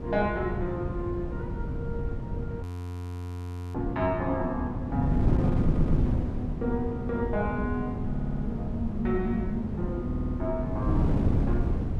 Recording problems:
wind on the microphone; below 190 Hz, SNR -1 dB
frozen audio; at 2.5 s for 1 s
stutter; at 5.5 s, at 8 s and at 10 s

